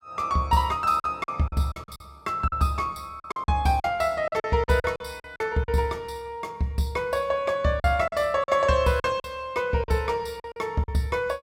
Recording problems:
packet loss; 10% of the sound replaced, filled with silence

